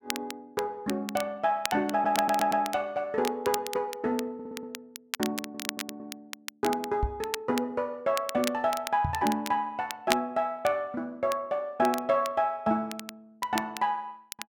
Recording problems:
crackling; vinyl, SNR 10 dB
audio stuttering; at 2 s, at 4.5 s and at 5.5 s
microphone thump; at 7 s and at 9 s; peak +3 dB vs average level

